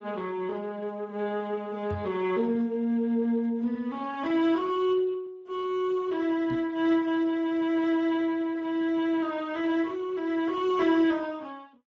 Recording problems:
lossy codec; Speex, log-spectral distance 2 dB
knock on the microphone; at 2 s and at 6.5 s; peak -5 dB vs average level

